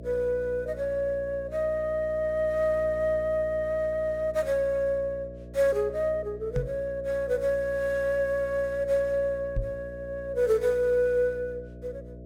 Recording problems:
electrical hum; 60 Hz, harmonics up to 660 Hz, SNR 16 dB
microphone thump; at 6.5 s and at 9.5 s; peak 0 dB vs average level

